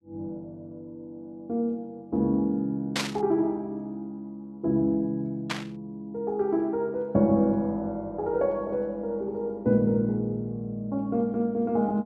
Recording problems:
static burst; at 3 s and at 5.5 s; peak +3 dB vs average level

